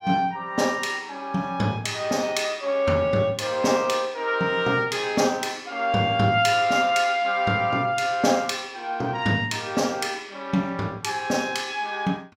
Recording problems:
none

